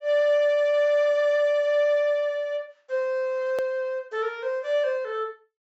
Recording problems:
low-pass filter; nothing above 8 kHz
edit click; at 3.5 s

